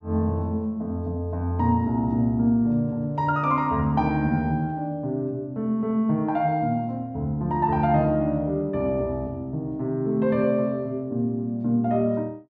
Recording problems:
none

